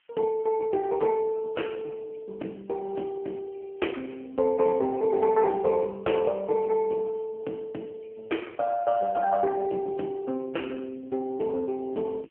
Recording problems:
telephone audio; 220 Hz to 2.5 kHz, AMR-NB
background hiss; SNR 41 dB

